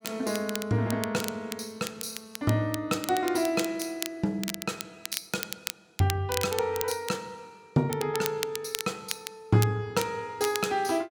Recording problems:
crackling; vinyl, SNR 8 dB

